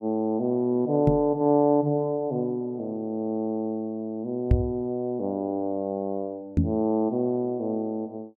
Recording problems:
microphone bump; at 1 s, at 4.5 s and at 6.5 s; peak +9 dB vs average level

